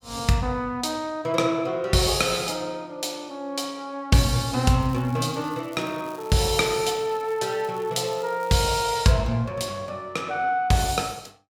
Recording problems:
crackle; from 5 to 9 s; loose cable, SNR 24 dB

